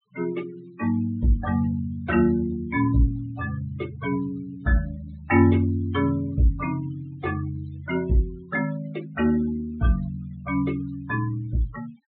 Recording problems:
treble missing; nothing above 4 kHz
denoising artefacts; signal-to-artefact ratio 21 dB

